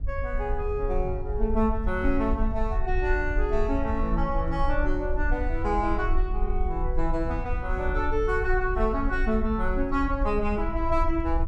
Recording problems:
low-frequency rumble; below 52 Hz, SNR 3 dB

